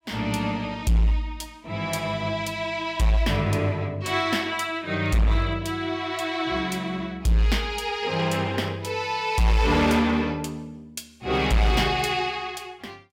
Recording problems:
distorted audio; hard clipping, uneven, signal-to-distortion ratio 11 dB

